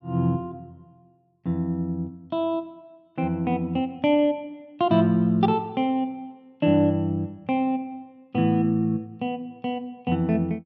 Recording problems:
none

